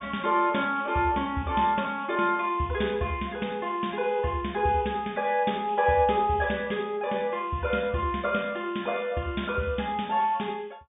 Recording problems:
low-pass filter; nothing above 3.7 kHz

